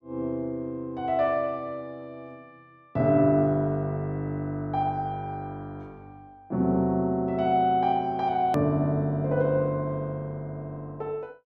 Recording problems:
click at an edit; at 8.5 s

